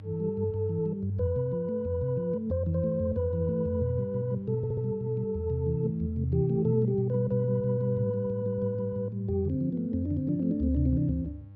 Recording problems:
hum; 50 Hz, harmonics up to 600 Hz, SNR 19 dB
audio stuttering; at 4.5 s

